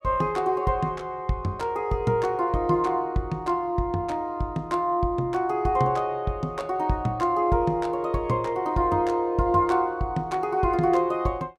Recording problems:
none

